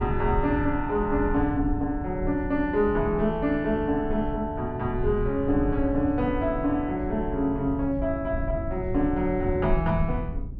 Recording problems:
rumble; below 100 Hz, SNR 8 dB

